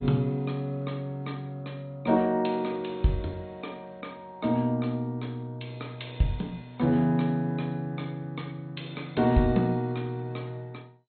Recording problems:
codec artefacts; MP2, log-spectral distance 2 dB, nothing above 4.2 kHz

